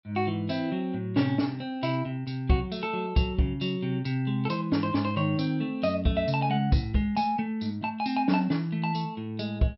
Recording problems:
treble cut off; nothing above 5.5 kHz

